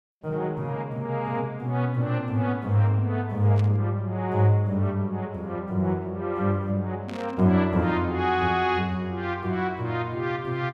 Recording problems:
static burst; at 3.5 s and at 7 s; peak -12 dB vs average level

